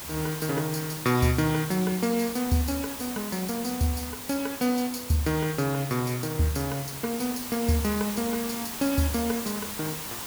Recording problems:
background hiss; slope -2 dB per octave, SNR 7 dB

